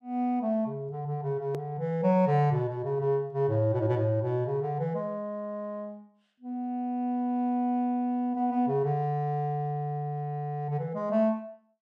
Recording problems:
hard cut with a click; at 1.5 s

